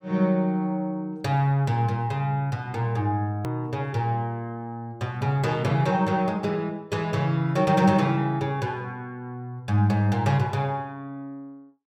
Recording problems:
edit click; at 3.5 s

